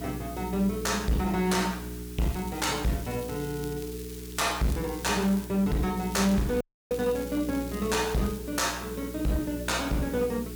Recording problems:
distorted audio; hard clipping, uneven, signal-to-distortion ratio 10 dB
mains hum; 60 Hz, harmonics up to 420 Hz, SNR 10 dB
background hiss; slope +1 dB per octave, SNR 16 dB
crackle; from 2 to 5.5 s and from 6 to 8.5 s; loose cable, SNR 19 dB
audio cutting out; at 6.5 s

